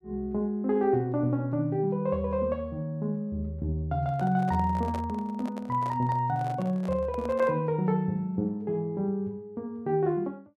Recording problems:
microphone handling noise; from 4 to 7.5 s; peak -6 dB vs average level

